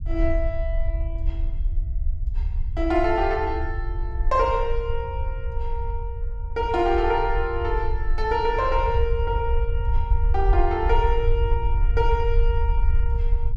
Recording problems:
rumble; below 62 Hz, SNR 1 dB

